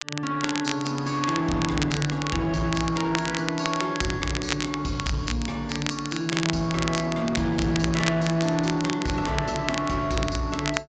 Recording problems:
treble missing; nothing above 8 kHz
distorted audio; soft clipping, signal-to-distortion ratio 12 dB
crackle; vinyl, SNR 6 dB

